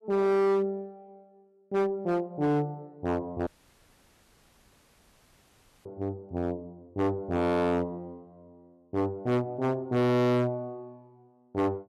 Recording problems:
distorted audio; hard clipping, signal-to-distortion ratio 6 dB
dropout; at 3.5 s for 2.5 s

